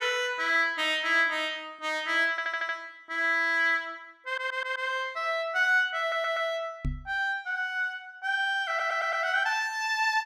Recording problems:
audio stuttering; 4 times, first at 2.5 s
microphone thump; at 7 s; peak -2 dB vs average level

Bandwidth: 14.5 kHz